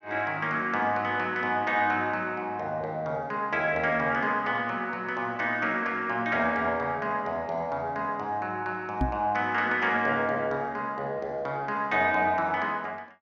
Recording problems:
microphone thump; at 9 s; peak +3 dB vs average level

